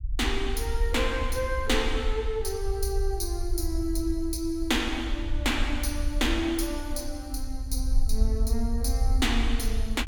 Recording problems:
rumble; below 58 Hz, SNR 2 dB

